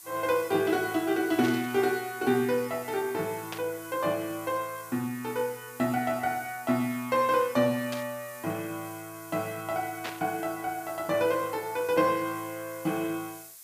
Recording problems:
background hiss; SNR 16 dB
burst of static; 4 times, first at 1.5 s; peak -3 dB vs average level

